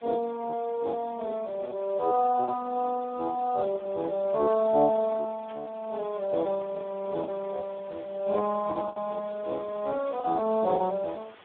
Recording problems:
telephone audio; 190 Hz to 2.1 kHz, Speex
background hiss; SNR 25 dB
packet loss; 2% of the sound replaced, filled with the last packet
burst of static; at 5.5 s and at 10 s; peak -17 dB vs average level

